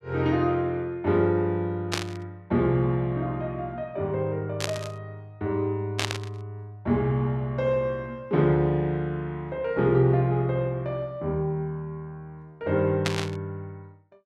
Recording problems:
static burst; 4 times, first at 2 s; peak +4 dB vs average level

